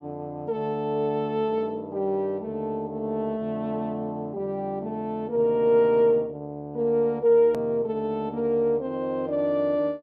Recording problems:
edit click; at 7.5 s

